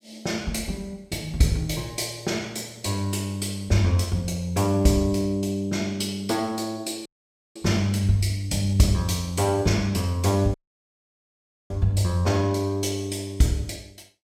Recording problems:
audio cutting out; at 7 s and at 11 s for 1 s

